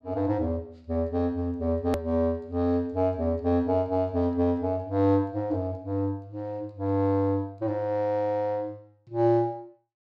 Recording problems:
click at an edit; at 2 s

